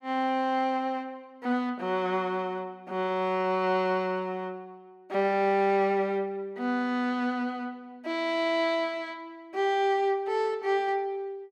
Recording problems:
none

